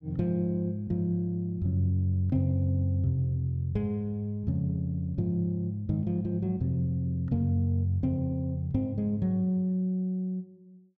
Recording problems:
none

